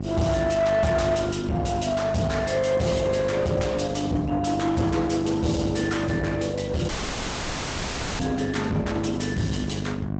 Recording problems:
low-pass filter; nothing above 8 kHz
codec artefacts; Opus, log-spectral distance 4 dB
distorted audio; soft clipping, signal-to-distortion ratio 9 dB
electrical hum; 50 Hz, harmonics up to 1.1 kHz, SNR 6 dB
audio cutting out; at 7 s for 1.5 s

